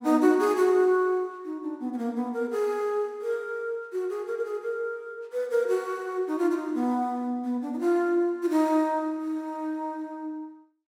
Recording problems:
none

